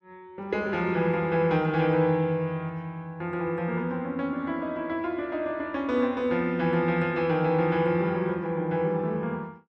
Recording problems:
treble cut off; nothing above 7.9 kHz

